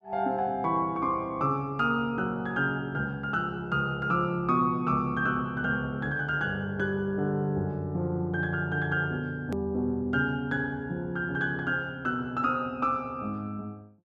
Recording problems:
edit click; at 9.5 s

